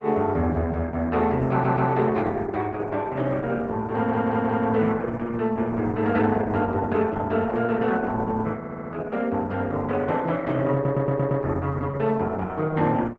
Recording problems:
codec artefacts; Opus, log-spectral distance 3 dB
audio stuttering; 4 times, first at 1.5 s

